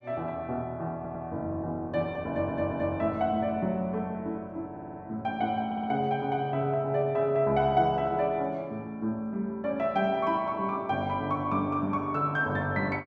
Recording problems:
audio stuttering; 4 times, first at 1 s

